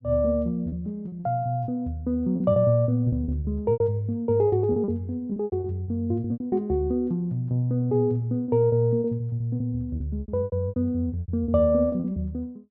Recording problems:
lost packets; 14% of the sound replaced, filled with repeated pitch periods

